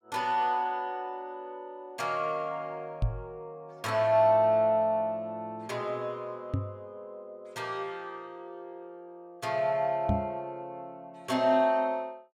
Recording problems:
microphone thump; at 3 s, at 6.5 s and at 10 s; peak +4 dB vs average level

